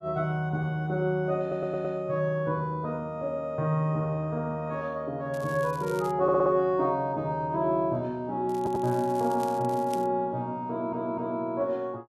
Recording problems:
stutter; 4 times, first at 1.5 s
crackling; at 5.5 s and from 8.5 to 10 s; loose cable, SNR 21 dB

